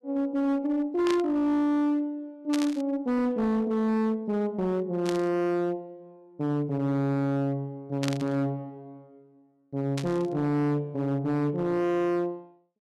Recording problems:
distortion; hard clipping, signal-to-distortion ratio 11 dB
static burst; 5 times, first at 1 s; peak -2 dB vs average level

